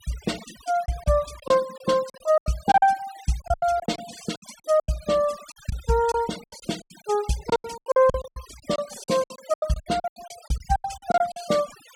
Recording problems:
denoising artefacts; signal-to-artefact ratio 17 dB
lost packets; 17% of the sound replaced, filled with silence

